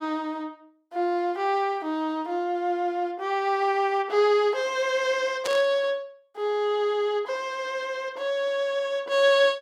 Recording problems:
burst of static; at 5.5 s; peak -3 dB vs average level

